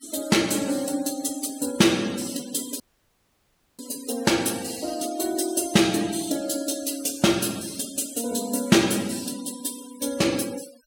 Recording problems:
denoising artefacts; signal-to-artefact ratio 17 dB
dropout; at 3 s for 1 s

